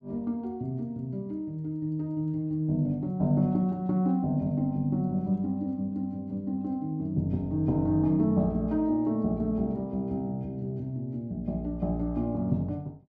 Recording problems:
none

